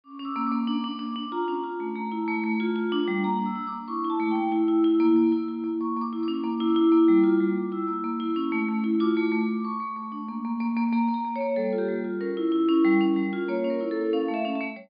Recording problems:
treble cut off; nothing above 5.1 kHz

